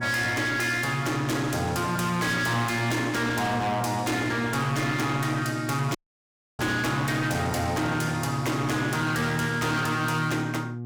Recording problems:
distortion; hard clipping, uneven, signal-to-distortion ratio 6 dB
electrical hum; 60 Hz, harmonics up to 720 Hz, SNR 9 dB
audio cutting out; at 6 s for 0.5 s

